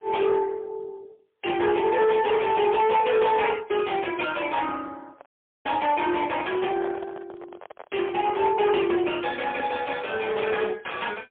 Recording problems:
telephone audio; 280 Hz to 3.4 kHz, AMR-NB, then MP3
distortion; hard clipping, signal-to-distortion ratio 11 dB
microphone handling noise; from 5 to 9 s; peak -7 dB vs average level
audio cutting out; at 5.5 s

